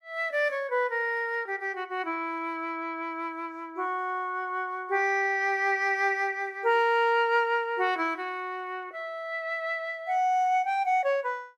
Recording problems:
none

